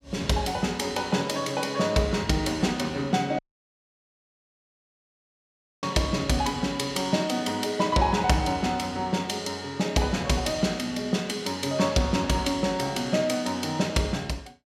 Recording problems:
dropout; at 3.5 s for 2.5 s

